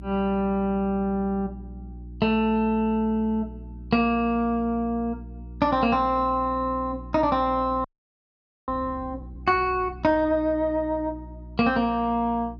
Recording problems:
hum; 60 Hz, harmonics up to 360 Hz, SNR 16 dB
audio freezing; at 8 s for 1 s

